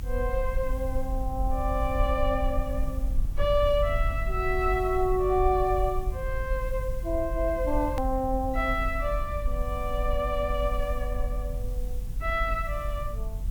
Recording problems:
hiss; slope +2 dB per octave, SNR 24 dB
rumble; below 54 Hz, SNR 4 dB
click at an edit; at 8 s

